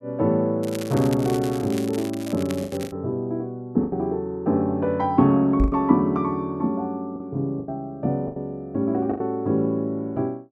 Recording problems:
packet loss; 6% of the sound replaced, filled with the last packet
crackle; from 0.5 to 3 s; loose cable, SNR 16 dB
microphone bump; at 5.5 s; peak +3 dB vs average level

